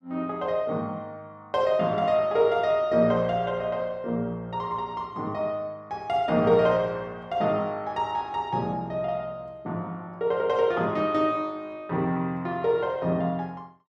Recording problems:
none

